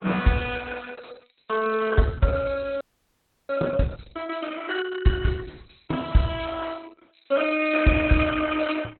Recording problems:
lossy compression; Opus, log-spectral distance 7 dB, nothing above 4 kHz
frozen audio; at 3 s for 0.5 s

